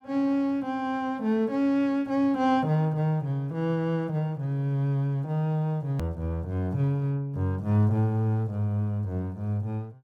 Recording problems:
edit click; at 6 s

